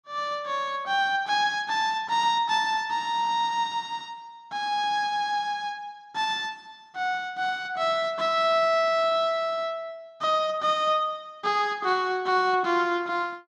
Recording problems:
none

